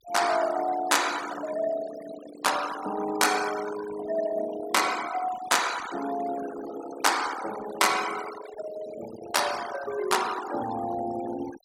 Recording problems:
denoising artefacts; signal-to-artefact ratio 11 dB

